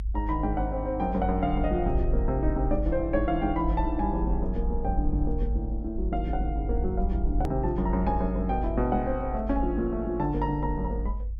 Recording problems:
low-frequency rumble; below 54 Hz, strongest tone 52 Hz, SNR 3 dB
edit click; at 7.5 s

